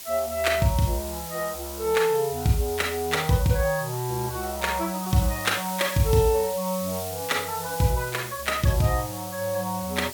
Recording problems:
hiss; SNR 10 dB

